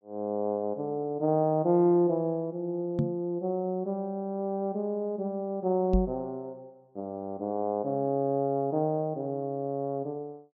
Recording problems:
microphone thump; at 3 s and at 6 s; peak +6 dB vs average level

